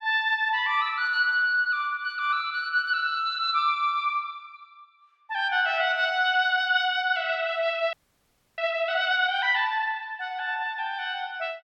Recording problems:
audio freezing; at 8 s for 0.5 s

